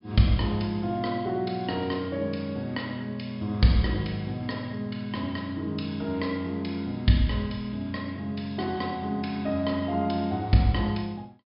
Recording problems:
low-pass filter; nothing above 5.5 kHz

